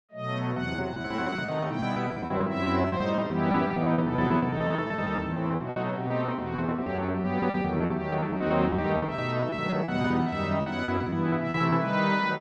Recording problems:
packet loss; 17% of the sound replaced, filled with repeated pitch periods

